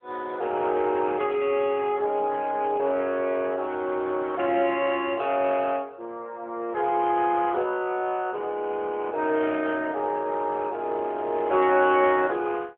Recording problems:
telephone audio; 300 Hz to 3.4 kHz, AMR-NB

